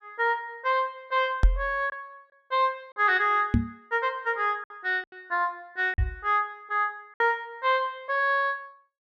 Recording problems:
packet loss; 4% of the sound replaced, filled with silence
microphone bump; at 1.5 s, at 3.5 s and at 6 s; peak +9 dB vs average level

